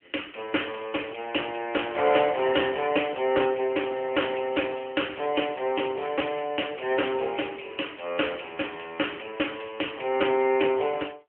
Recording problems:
telephone audio; 320 Hz to 3.2 kHz, AMR-NB

